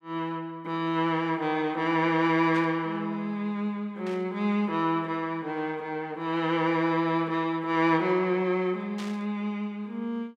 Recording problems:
static burst; at 2.5 s, at 4 s and at 9 s; peak -10 dB vs average level

